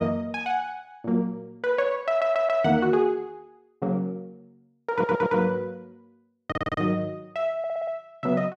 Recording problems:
stutter; 4 times, first at 2 s

